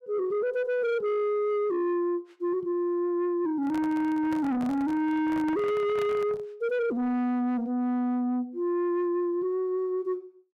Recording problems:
distortion; soft clipping, signal-to-distortion ratio 11 dB
microphone handling noise; from 3.5 to 6.5 s; peak -5 dB vs average level

